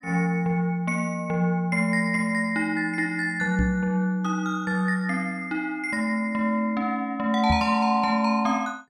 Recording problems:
microphone bump; at 3.5 s and at 7.5 s; peak +2 dB vs average level

